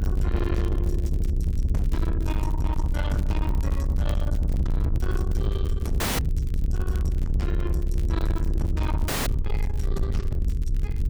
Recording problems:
distortion; soft clipping, signal-to-distortion ratio 7 dB
hum; 50 Hz, harmonics up to 450 Hz, SNR 7 dB
rumble; below 80 Hz, strongest tone 32 Hz, SNR -5 dB
crackling; vinyl, SNR 20 dB
dropout; at 6 s and at 9 s

